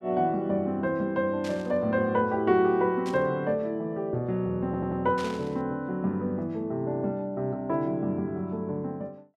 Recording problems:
burst of static; at 1.5 s, at 3 s and at 5 s; peak -8 dB vs average level
audio stuttering; at 4.5 s

